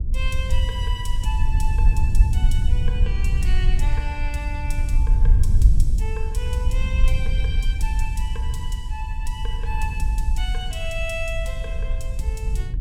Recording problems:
wind on the microphone; below 62 Hz, SNR -9 dB

